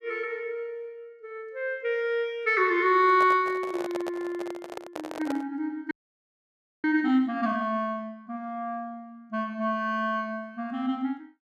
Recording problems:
microphone handling noise; from 3 to 5.5 s; peak -4 dB vs average level
frozen audio; at 6 s for 1 s

